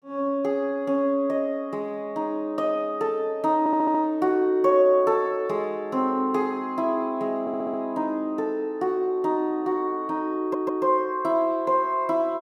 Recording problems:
stutter; at 3.5 s, at 7.5 s and at 10 s

